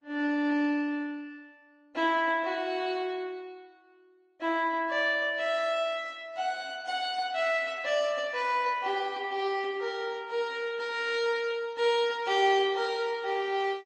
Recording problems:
lossy codec; Opus, then MP3, log-spectral distance 2 dB, nothing above 9 kHz

